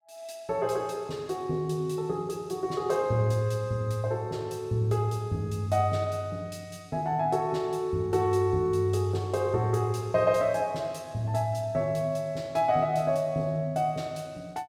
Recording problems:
none

